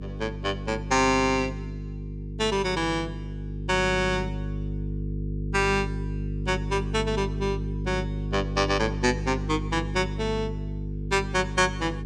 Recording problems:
mains hum; 50 Hz, harmonics up to 450 Hz, SNR 6 dB

